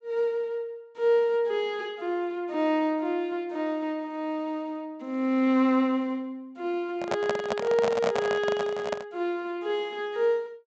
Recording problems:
treble cut off; nothing above 8 kHz
handling noise; from 7 to 9 s; peak +3 dB vs average level

